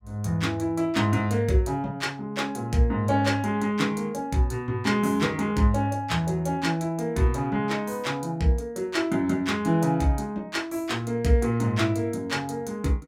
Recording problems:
none

